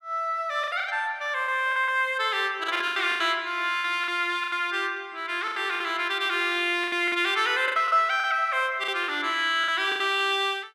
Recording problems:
lost packets; 12% of the sound replaced, filled with the last packet

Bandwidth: 14.5 kHz